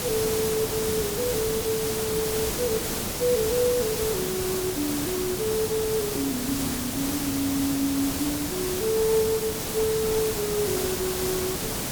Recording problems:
hiss; SNR 1 dB

